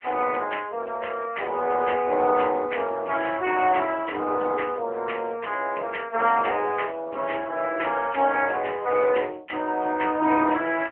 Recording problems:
telephone audio; 280 Hz to 3.1 kHz, AMR-NB

